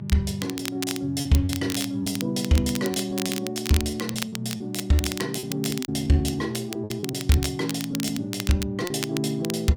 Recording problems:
hum; 60 Hz, harmonics up to 960 Hz, SNR 18 dB
crackling; vinyl, SNR 9 dB
lost packets; 9% of the sound replaced, filled with repeated pitch periods

